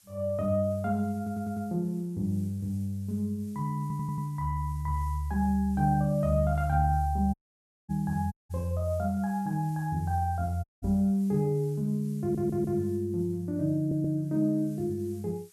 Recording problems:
background hiss; slope +2 dB per octave, SNR 27 dB
audio stuttering; 4 times, first at 1 s
audio cutting out; at 7.5 s for 0.5 s, at 8.5 s and at 11 s
knock on the microphone; at 11 s; peak -6 dB vs average level

